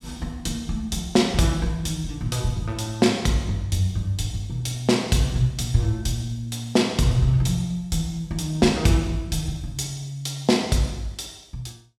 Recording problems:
none

